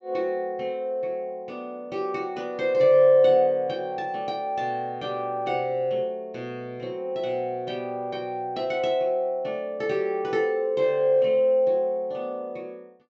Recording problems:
treble missing; nothing above 8 kHz

